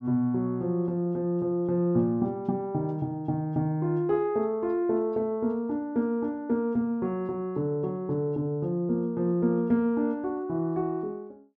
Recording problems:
none

